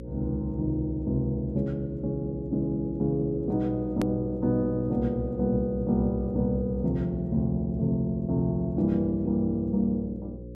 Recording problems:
electrical hum; 60 Hz, harmonics up to 540 Hz, SNR 12 dB
edit click; at 4 s

